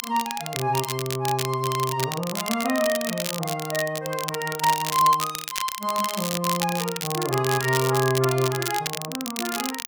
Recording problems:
crackle; vinyl, SNR 5 dB

